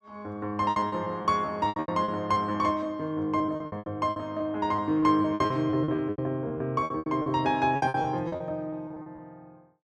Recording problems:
lost packets; 17% of the sound replaced, filled with repeated pitch periods

